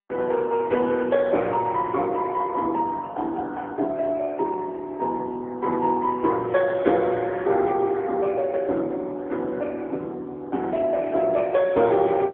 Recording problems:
telephone audio; 190 Hz to 4 kHz, AMR-NB

